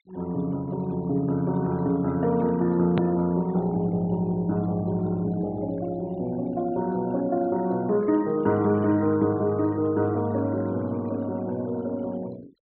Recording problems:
low-pass filter; nothing above 4.2 kHz
noise reduction artefacts; signal-to-artefact ratio 24 dB
hard cut with a click; at 3 s

